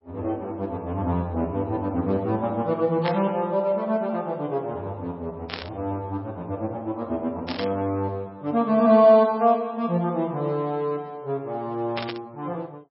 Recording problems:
lossy compression; MP3, log-spectral distance 2 dB, nothing above 4.6 kHz
static burst; 4 times, first at 3 s; peak -2 dB vs average level

